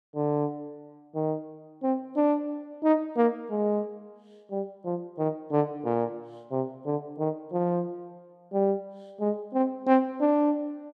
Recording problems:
none

